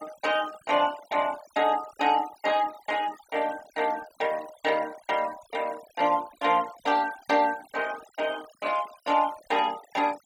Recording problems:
denoising artefacts; signal-to-artefact ratio 18 dB

